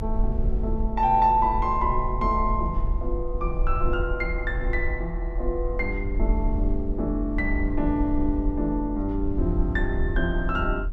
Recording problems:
rumble; below 54 Hz, SNR 3 dB

